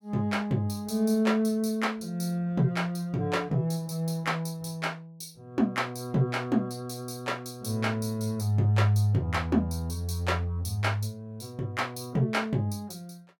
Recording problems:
none

